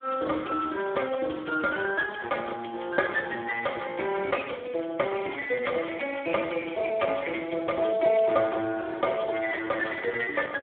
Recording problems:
telephone audio; 280 Hz to 2.1 kHz, Speex

